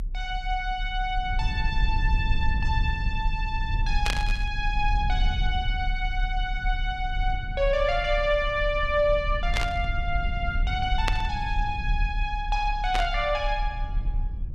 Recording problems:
rumble; below 58 Hz, strongest tone 34 Hz, SNR 2 dB
burst of static; 4 times, first at 4 s; peak +4 dB vs average level

